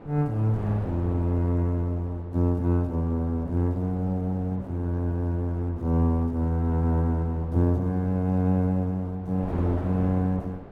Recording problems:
wind noise; below 600 Hz, SNR 16 dB

